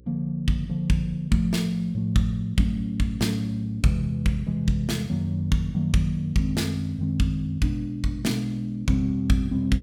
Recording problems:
hum; 60 Hz, harmonics up to 540 Hz, SNR 25 dB

